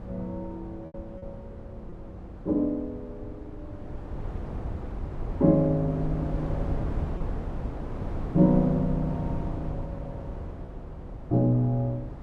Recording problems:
wind noise; below 210 Hz, SNR 10 dB
packet loss; 1.8% of the sound replaced, filled with repeated pitch periods

